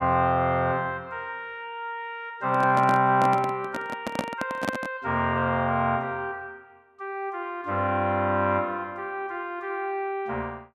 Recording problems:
microphone handling noise; from 2.5 to 5 s; peak +3 dB vs average level

